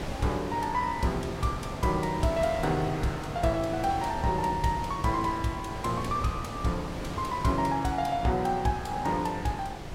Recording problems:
wind on the microphone; below 760 Hz, SNR 8 dB

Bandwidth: 16 kHz